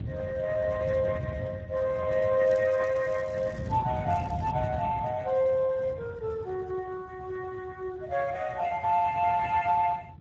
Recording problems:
lossy codec; Speex, log-spectral distance 3 dB
wind noise; below 190 Hz, SNR 11 dB
crackling; from 2.5 to 4 s and at 4 s; loose cable, SNR 29 dB

